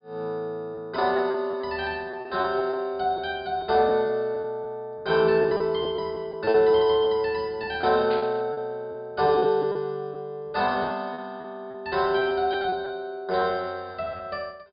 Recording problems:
low-pass filter; nothing above 4.9 kHz
lost packets; 8% of the sound replaced, filled with repeated pitch periods
static burst; at 8 s; peak -10 dB vs average level

